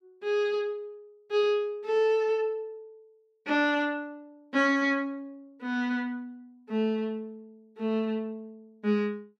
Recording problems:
none

